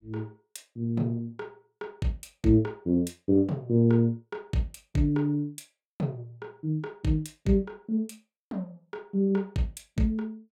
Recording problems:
none

